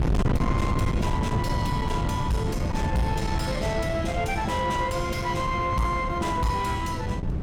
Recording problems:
distorted audio; soft clipping, signal-to-distortion ratio 7 dB
wind on the microphone; below 220 Hz, SNR 1 dB

